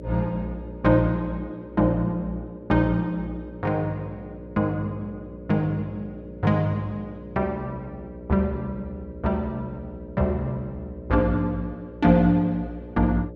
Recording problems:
hum; 60 Hz, harmonics up to 600 Hz, SNR 14 dB

